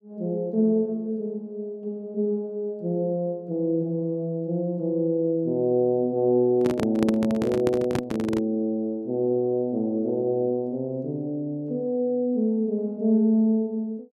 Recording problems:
microphone handling noise; from 6.5 to 8.5 s; peak +1 dB vs average level

